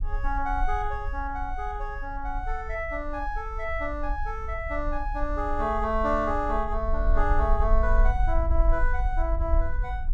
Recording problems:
low-frequency rumble; below 50 Hz, SNR 1 dB

